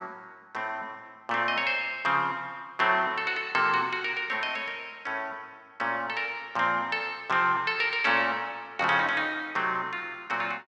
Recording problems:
none

